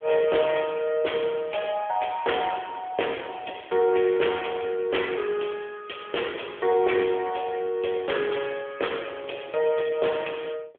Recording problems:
telephone audio; 300 Hz to 3.4 kHz, AMR-NB

